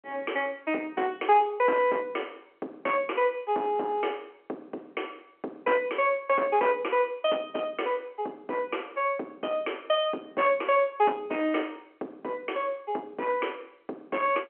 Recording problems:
telephone audio; 260 Hz to 3.3 kHz, G.711
distorted audio; soft clipping, signal-to-distortion ratio 13 dB

